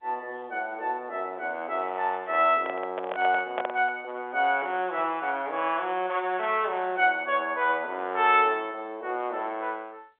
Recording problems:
phone line; 300 Hz to 3.5 kHz, G.711
handling noise; from 2.5 to 4 s; peak 0 dB vs average level

